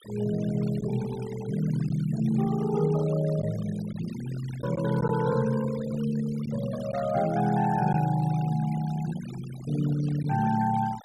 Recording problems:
noise reduction artefacts; signal-to-artefact ratio 17 dB
packet loss; 1.1% of the sound replaced, filled with silence

